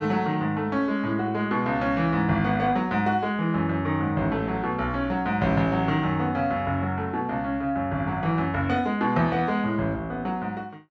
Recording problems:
none

